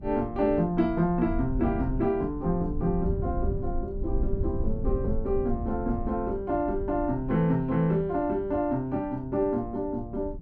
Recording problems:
rumble; below 96 Hz, SNR 8 dB

